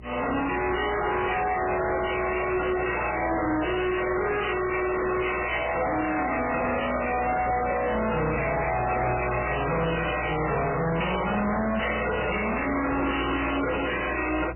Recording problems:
codec artefacts; MP3, log-spectral distance 13 dB, nothing above 2.8 kHz
distortion; soft clipping, signal-to-distortion ratio 5 dB
electrical hum; 60 Hz, harmonics up to 600 Hz, SNR 15 dB

